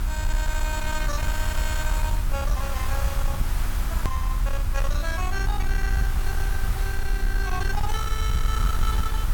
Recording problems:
distortion; soft clipping, signal-to-distortion ratio 10 dB
electrical hum; 60 Hz, harmonics up to 360 Hz, SNR 11 dB
background hiss; SNR 6 dB
low-frequency rumble; below 60 Hz, SNR -4 dB
hard cut with a click; at 4 s

